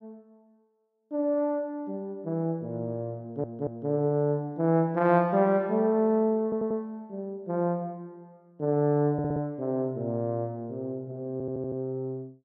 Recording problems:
audio stuttering; 4 times, first at 3 s

